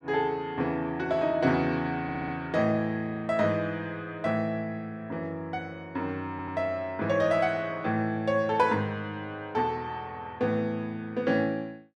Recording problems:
stutter; at 2 s and at 6.5 s

